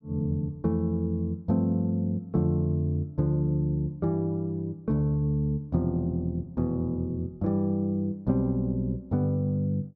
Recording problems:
none

